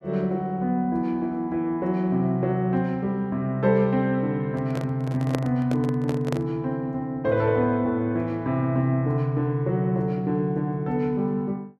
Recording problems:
handling noise; from 4.5 to 6.5 s; peak 0 dB vs average level

